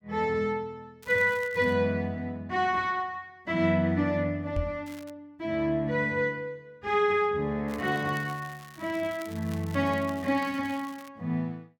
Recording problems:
crackle; at 1 s, at 5 s and from 7.5 to 11 s; loose cable, SNR 22 dB
knock on the microphone; at 4.5 s; peak 0 dB vs average level

